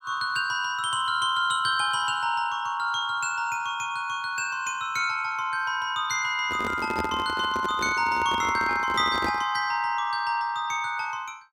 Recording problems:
microphone handling noise; from 6.5 to 9.5 s; peak -1 dB vs average level

